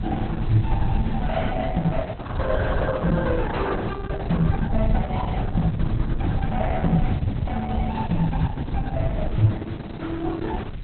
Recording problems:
lossy codec; Opus, log-spectral distance 4 dB, nothing above 4 kHz
background hiss; SNR 19 dB
rumble; below 120 Hz, SNR 1 dB

